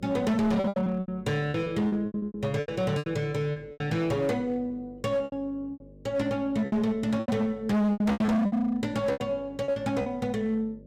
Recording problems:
distorted audio; hard clipping, signal-to-distortion ratio 8 dB
hum; 50 Hz, harmonics up to 600 Hz, SNR 23 dB
lost packets; 15% of the sound replaced, filled with repeated pitch periods

